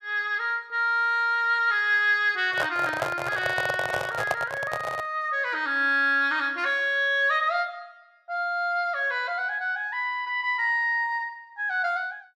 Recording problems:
handling noise; from 2.5 to 5 s; peak +2 dB vs average level

